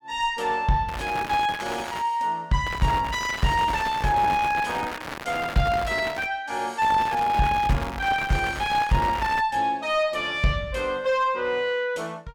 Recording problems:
distorted audio; soft clipping, signal-to-distortion ratio 7 dB
crackling; from 1 to 2 s, from 2.5 to 6.5 s and from 7 to 9.5 s; loose cable, SNR 11 dB

